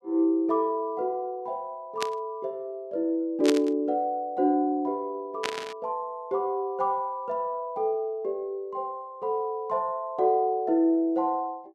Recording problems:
burst of static; at 2 s, at 3.5 s and at 5.5 s; peak +3 dB vs average level

